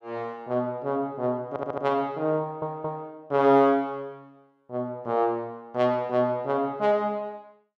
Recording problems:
audio stuttering; at 1.5 s and at 2.5 s

